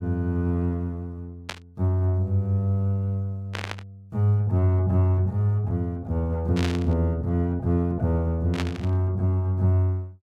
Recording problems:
burst of static; 4 times, first at 1.5 s; peak -3 dB vs average level

